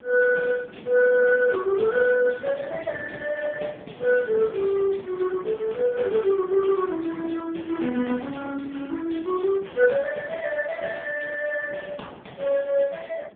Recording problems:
phone line; 260 Hz to 2.7 kHz, AMR-NB
wind noise; below 550 Hz, SNR 19 dB

